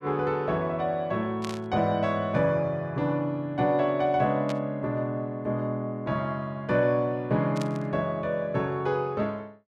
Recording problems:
burst of static; at 1.5 s, at 4.5 s and at 7.5 s; peak -7 dB vs average level

